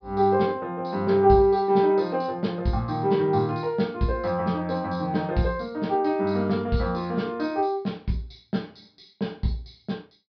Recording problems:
low-pass filter; nothing above 5.5 kHz

